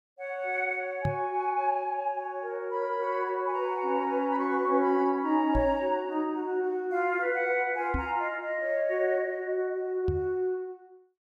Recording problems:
microphone bump; 4 times, first at 1 s; peak +1 dB vs average level

